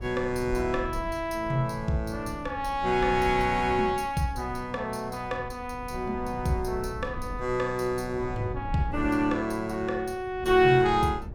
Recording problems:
rumble; below 110 Hz, SNR 13 dB

